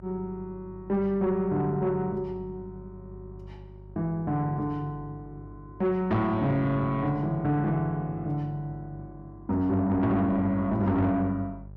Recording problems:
distorted audio; soft clipping, signal-to-distortion ratio 11 dB
electrical hum; 50 Hz, harmonics up to 600 Hz, SNR 19 dB

